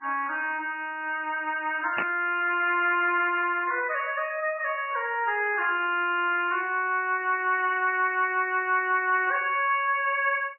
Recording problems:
lossy compression; MP3, log-spectral distance 2 dB, nothing above 2.4 kHz
burst of static; at 2 s; peak -1 dB vs average level

